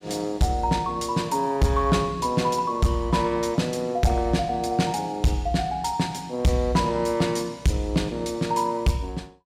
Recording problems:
distorted audio; hard clipping, signal-to-distortion ratio 11 dB

